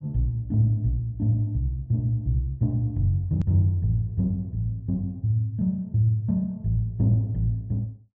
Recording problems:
treble cut off; nothing above 7.6 kHz
edit click; at 3.5 s

